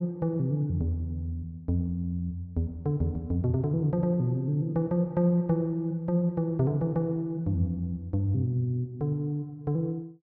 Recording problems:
none

